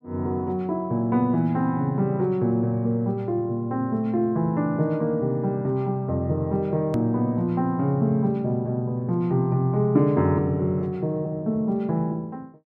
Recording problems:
edit click; at 7 s

